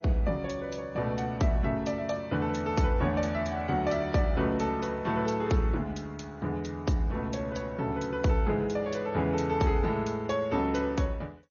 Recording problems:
lossy codec; MP3, then MP2, log-spectral distance 3 dB, nothing above 6.7 kHz

